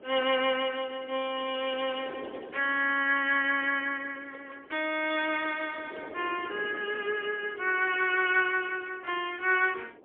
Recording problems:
telephone audio; 320 Hz to 3.4 kHz, AMR-NB, then MP3
wind noise; below 560 Hz, SNR 19 dB

